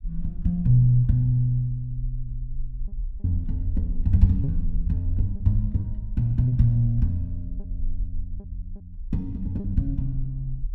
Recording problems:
rumble; below 44 Hz, SNR 10 dB
lost packets; 4% of the sound replaced, filled with repeated pitch periods

